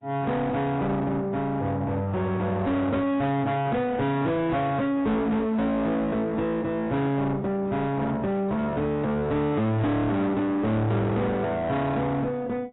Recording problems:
lossy compression; AAC, log-spectral distance 2 dB, nothing above 3.8 kHz
distortion; soft clipping, signal-to-distortion ratio 6 dB

